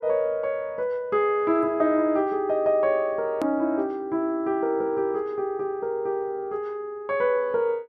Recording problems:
hard cut with a click; at 3.5 s

